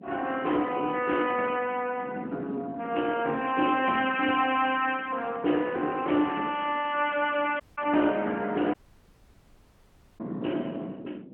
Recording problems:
telephone audio; 220 Hz to 3.1 kHz, AMR-NB
wind noise; below 360 Hz, SNR 16 dB
audio cutting out; at 7.5 s and at 8.5 s for 1.5 s

